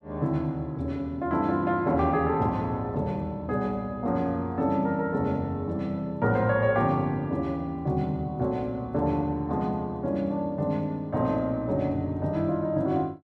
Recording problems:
none

